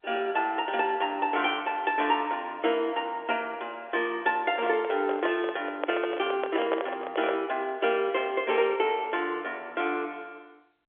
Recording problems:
telephone audio; 260 Hz to 3.4 kHz, G.711
microphone handling noise; from 4.5 to 7.5 s; peak +4 dB vs average level

